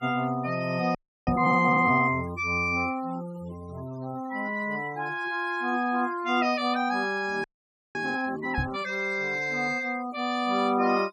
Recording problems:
denoising artefacts; signal-to-artefact ratio 22 dB
frozen audio; at 1 s and at 7.5 s for 0.5 s
knock on the microphone; at 1.5 s and at 8.5 s; peak +1 dB vs average level

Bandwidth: 14.5 kHz